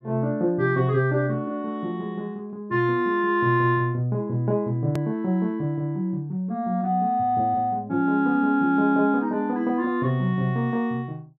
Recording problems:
click at an edit; at 5 s

